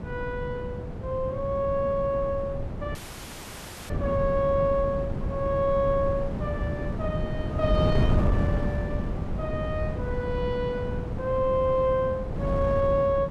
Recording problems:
wind on the microphone; below 220 Hz, SNR 3 dB
audio cutting out; at 3 s for 1 s

